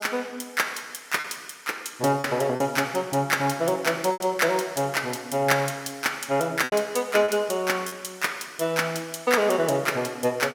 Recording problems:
packet loss; 3% of the sound replaced, filled with repeated pitch periods

